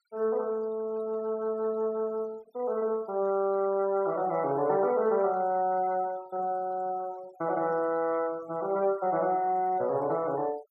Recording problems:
noise reduction artefacts; signal-to-artefact ratio 23 dB

